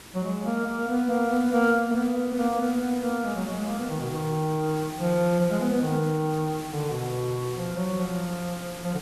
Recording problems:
background hiss; SNR 15 dB

